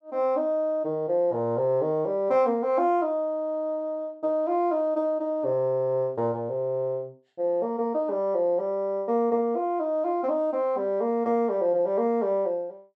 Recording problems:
none

